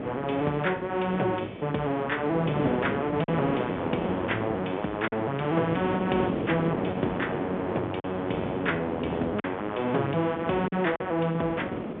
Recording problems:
phone line; 220 Hz to 3.5 kHz, G.711
wind on the microphone; below 570 Hz, SNR 5 dB
packet loss; 2% of the sound replaced, filled with silence

